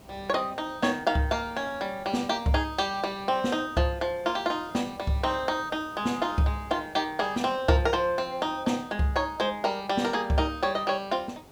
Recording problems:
background hiss; SNR 22 dB

